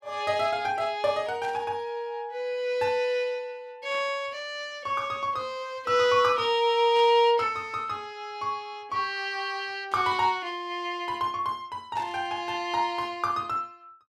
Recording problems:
static burst; 5 times, first at 1.5 s; peak -14 dB vs average level

